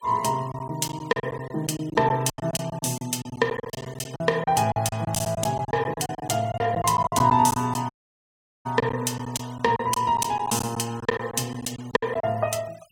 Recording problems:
denoising artefacts; signal-to-artefact ratio 23 dB
lost packets; 15% of the sound replaced, filled with silence
dropout; at 8 s for 1 s

